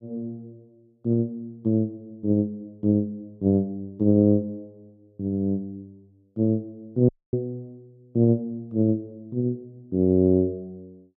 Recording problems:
dropout; at 7 s

